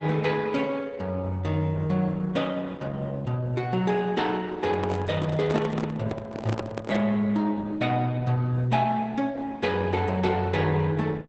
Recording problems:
codec artefacts; Opus, log-spectral distance 3 dB, nothing above 8.2 kHz
microphone handling noise; from 4.5 to 7 s; peak 0 dB vs average level

